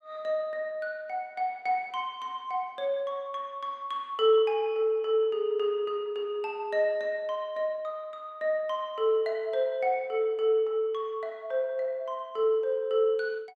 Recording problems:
none

